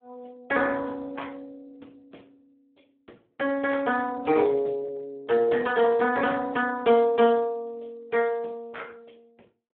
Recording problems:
phone line; 240 Hz to 3.4 kHz, Speex

